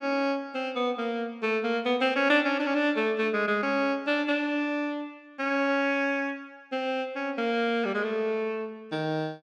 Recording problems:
none

